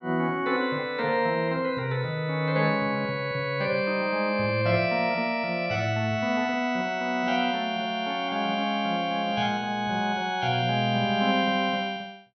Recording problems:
none

